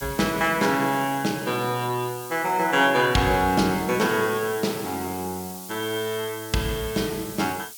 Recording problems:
hiss; SNR 14 dB

